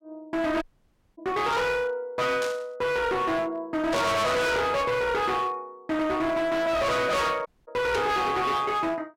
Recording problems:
distortion; hard clipping, uneven, signal-to-distortion ratio 6 dB
dropout; at 0.5 s for 0.5 s and at 7.5 s
burst of static; at 2.5 s, at 4 s and at 8 s; peak -4 dB vs average level

